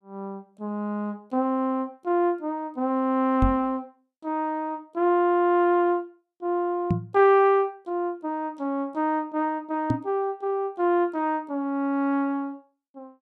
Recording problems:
microphone bump; at 3.5 s, at 7 s and at 10 s; peak +5 dB vs average level

